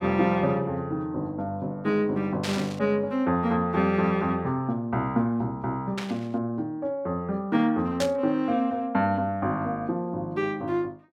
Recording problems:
static burst; at 2.5 s, at 6 s and at 8 s; peak 0 dB vs average level

